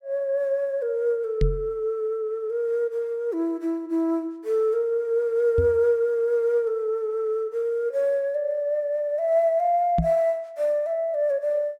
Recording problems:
microphone thump; at 1.5 s, at 5.5 s and at 10 s; peak +4 dB vs average level

